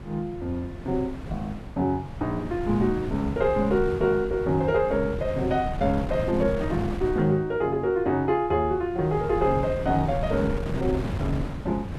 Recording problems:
wind noise; below 240 Hz, SNR 8 dB

